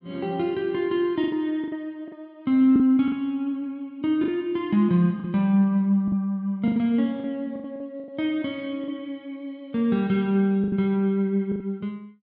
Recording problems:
treble cut off; nothing above 5.5 kHz
packet loss; 8% of the sound replaced, filled with the last packet

